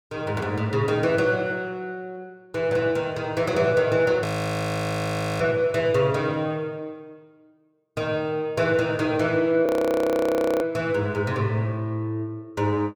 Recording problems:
audio freezing; at 4.5 s for 1 s and at 9.5 s for 1 s

